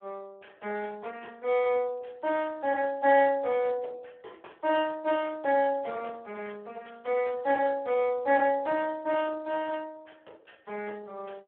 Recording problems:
phone line; 340 Hz to 3.2 kHz, Speex

